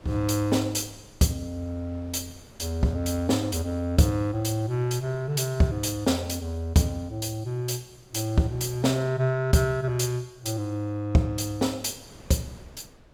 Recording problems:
wind noise; below 590 Hz, SNR 26 dB

